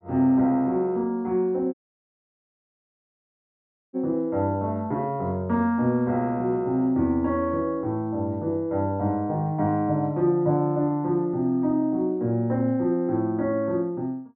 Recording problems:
audio cutting out; at 1.5 s for 2 s

